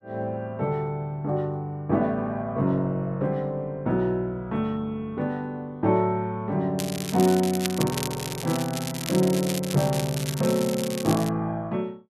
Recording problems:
crackling; from 7 to 11 s; loose cable, SNR 8 dB

